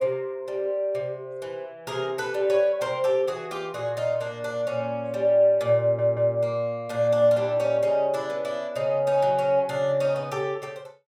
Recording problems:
audio stuttering; at 6 s

